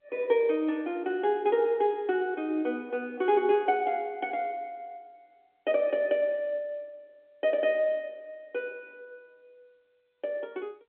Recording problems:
telephone audio; 260 Hz to 3.7 kHz, G.711

